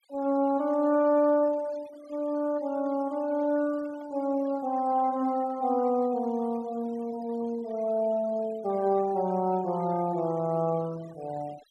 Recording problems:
denoising artefacts; signal-to-artefact ratio 23 dB

